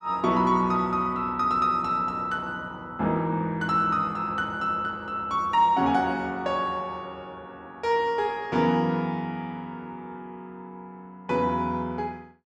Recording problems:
none

